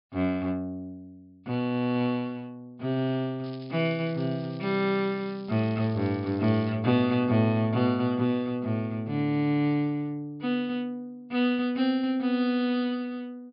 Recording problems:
treble missing; nothing above 5.5 kHz
crackling; from 3.5 to 6.5 s; loose cable, SNR 24 dB

